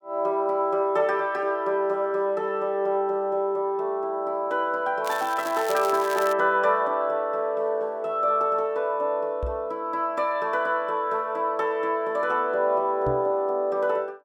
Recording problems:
crackle; from 5 to 6.5 s; loose cable, SNR 14 dB
microphone bump; at 9.5 s and at 13 s; peak -3 dB vs average level

